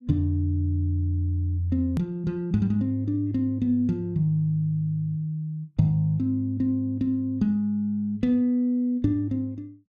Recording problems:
click at an edit; at 2 s

